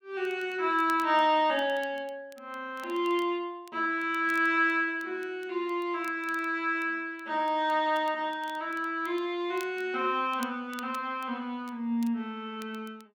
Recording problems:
crackle; vinyl, SNR 25 dB

